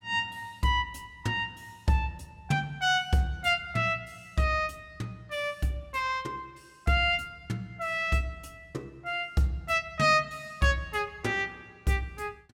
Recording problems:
none

